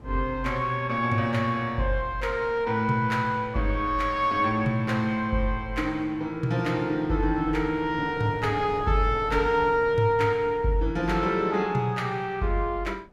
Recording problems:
wind noise; below 500 Hz, SNR 19 dB

